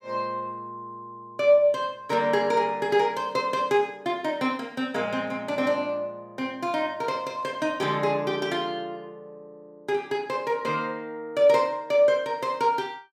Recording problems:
none

